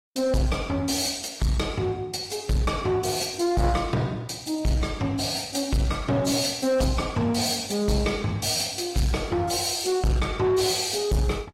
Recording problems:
lossy codec; AAC, log-spectral distance 4 dB, nothing above 13.8 kHz
distorted audio; soft clipping, signal-to-distortion ratio 10 dB

